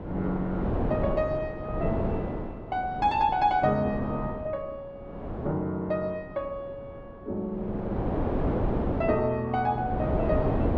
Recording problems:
wind noise; below 520 Hz, SNR 2 dB

